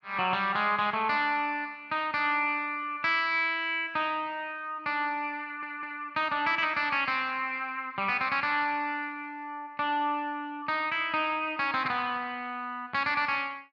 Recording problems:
stutter; at 5.5 s

